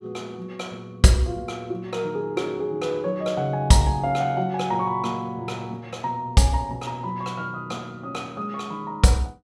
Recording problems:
none

